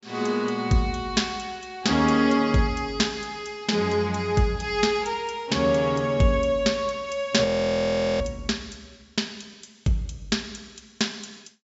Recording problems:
treble cut off; nothing above 8 kHz
frozen audio; at 7.5 s for 0.5 s

